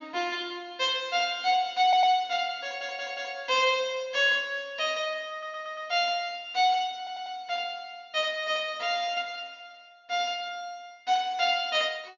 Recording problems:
treble missing; nothing above 6.8 kHz
stutter; 4 times, first at 2 s

